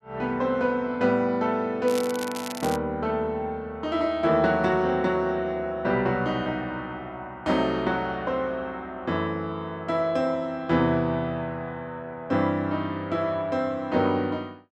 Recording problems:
crackling; at 2 s; loose cable, SNR 12 dB

